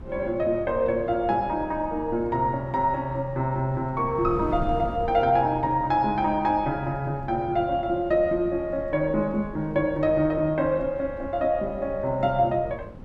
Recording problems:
wind noise; below 220 Hz, SNR 16 dB

